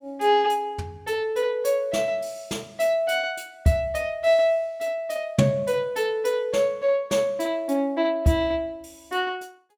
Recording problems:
none

